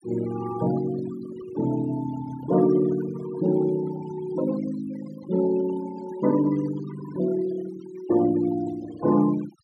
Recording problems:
noise reduction artefacts; signal-to-artefact ratio 15 dB

